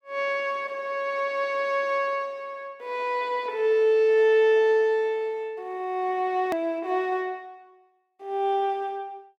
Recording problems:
hard cut with a click; at 6.5 s

